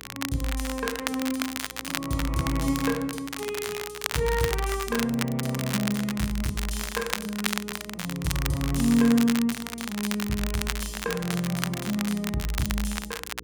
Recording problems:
hum; 60 Hz, harmonics up to 480 Hz, SNR 23 dB
crackling; vinyl, SNR 5 dB

